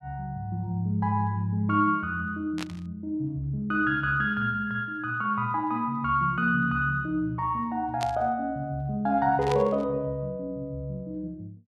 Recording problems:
burst of static; at 2.5 s, at 8 s and at 9.5 s; peak -4 dB vs average level

